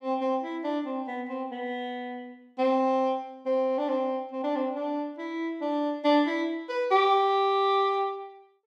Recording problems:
none

